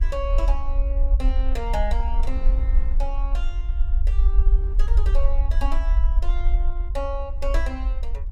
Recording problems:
rumble; below 48 Hz, SNR -10 dB
wind on the microphone; below 230 Hz, SNR 16 dB

